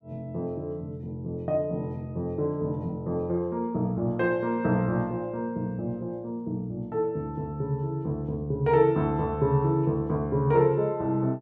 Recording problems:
none

